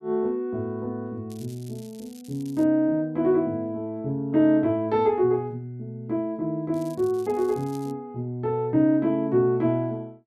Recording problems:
crackle; from 1.5 to 2.5 s and from 6.5 to 8 s; loose cable, SNR 26 dB

